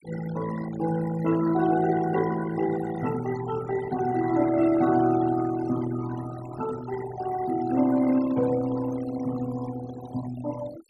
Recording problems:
denoising artefacts; signal-to-artefact ratio 13 dB

